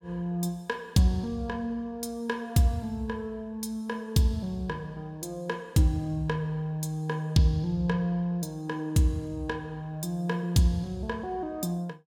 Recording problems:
none

